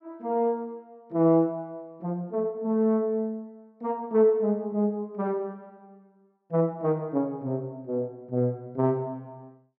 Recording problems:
none

